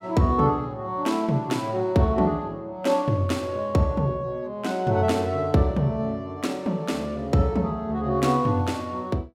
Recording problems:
none

